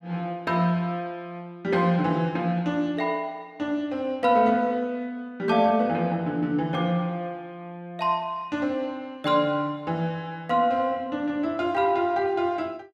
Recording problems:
none

